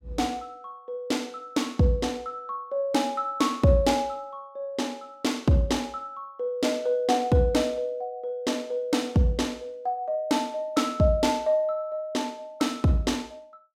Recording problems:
none

